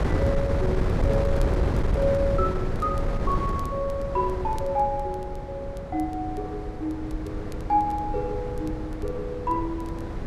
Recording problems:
wind on the microphone; below 270 Hz, SNR 1 dB
crackle; vinyl, SNR 28 dB

